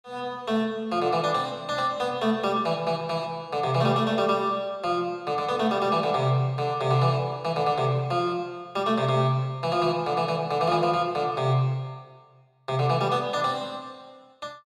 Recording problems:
none

